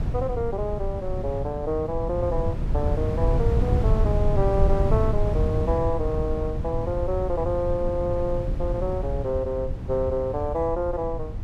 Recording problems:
wind on the microphone; below 120 Hz, SNR 0 dB

